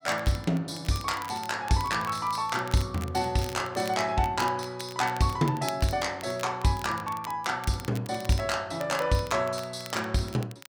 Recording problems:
crackle; vinyl, SNR 17 dB

